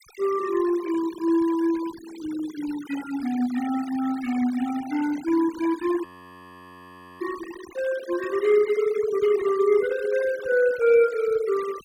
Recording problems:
noise reduction artefacts; signal-to-artefact ratio 18 dB
frozen audio; at 6 s for 1 s

